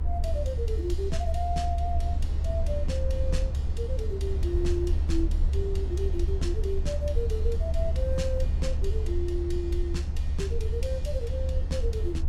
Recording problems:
rumble; below 72 Hz, SNR -5 dB

